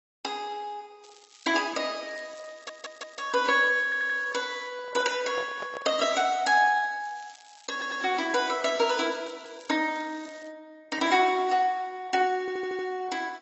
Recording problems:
lossy compression; AAC, log-spectral distance 6 dB, nothing above 7.6 kHz
crackling; from 1 to 4.5 s and from 7 to 10 s; loose cable, SNR 26 dB
audio stuttering; 4 times, first at 2.5 s
handling noise; from 5 to 6.5 s; peak -8 dB vs average level

